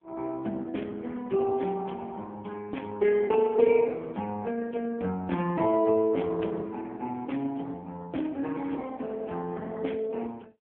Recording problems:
telephone audio; 190 Hz to 3.3 kHz, AMR-NB

